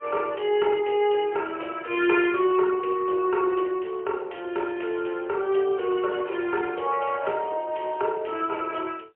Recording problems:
phone line; 320 Hz to 3.3 kHz, AMR-NB, then MP3

